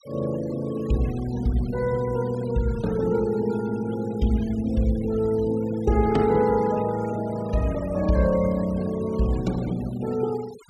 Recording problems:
noise reduction artefacts; signal-to-artefact ratio 20 dB

